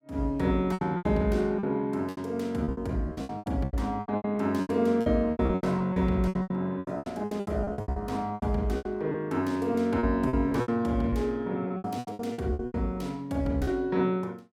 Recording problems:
lost packets; 19% of the sound replaced, filled with repeated pitch periods

